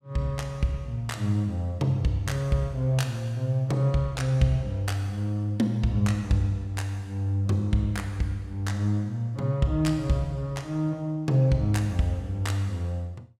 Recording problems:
none

